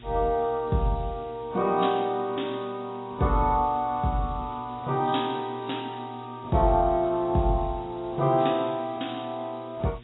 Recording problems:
codec artefacts; AAC, log-spectral distance 9 dB, nothing above 3.8 kHz
electrical hum; 60 Hz, harmonics up to 720 Hz, SNR 20 dB
hiss; SNR 27 dB

